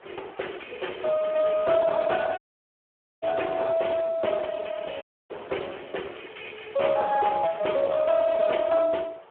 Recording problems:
phone line; 320 Hz to 3.3 kHz, Speex
distorted audio; soft clipping, signal-to-distortion ratio 13 dB
wind on the microphone; below 1.2 kHz, SNR 24 dB
audio cutting out; at 2.5 s for 1 s and at 5 s

